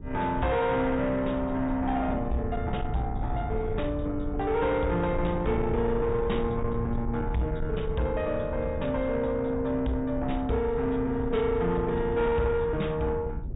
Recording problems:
treble cut off; nothing above 4 kHz
distortion; soft clipping, signal-to-distortion ratio 12 dB
rumble; below 130 Hz, SNR 7 dB

